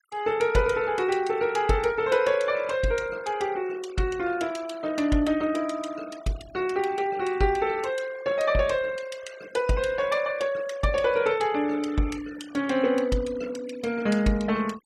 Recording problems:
denoising artefacts; signal-to-artefact ratio 21 dB

